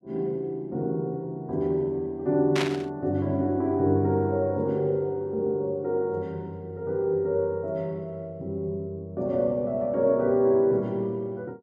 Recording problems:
static burst; at 2.5 s; peak +1 dB vs average level

